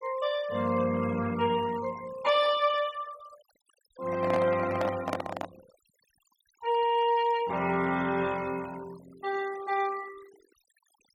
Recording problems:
noise reduction artefacts; signal-to-artefact ratio 18 dB
microphone handling noise; from 4 to 5.5 s; peak +1 dB vs average level

